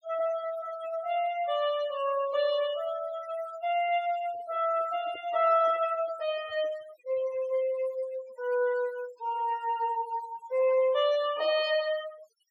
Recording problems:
noise reduction artefacts; signal-to-artefact ratio 17 dB
handling noise; from 4 to 7.5 s; peak -17 dB vs average level

